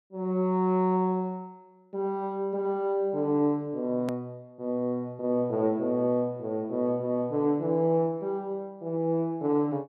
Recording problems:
hard cut with a click; at 4 s

